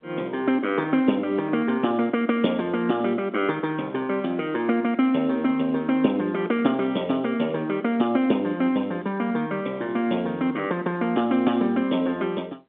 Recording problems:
telephone audio; 240 Hz to 3.7 kHz, G.711

